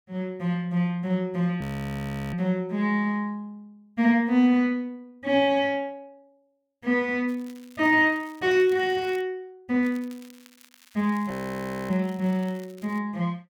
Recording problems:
frozen audio; at 1.5 s for 0.5 s and at 11 s for 0.5 s
crackle; from 7.5 to 9 s and from 10 to 13 s; loose cable, SNR 27 dB

